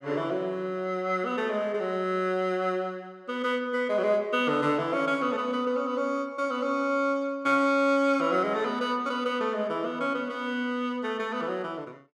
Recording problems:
none

